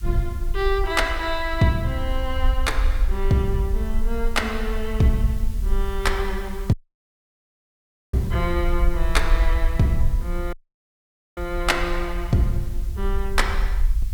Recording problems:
hiss; slope +2 dB per octave, SNR 22 dB
low-frequency rumble; below 50 Hz, SNR 2 dB
audio cutting out; at 6.5 s for 1.5 s and at 11 s for 1 s

